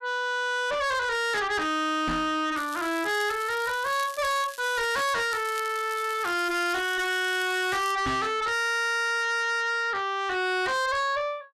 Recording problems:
distortion; soft clipping, signal-to-distortion ratio 6 dB
knock on the microphone; at 2 s and at 8 s; peak +1 dB vs average level
crackle; from 2.5 to 5 s and from 5.5 to 8 s; loose cable, SNR 17 dB

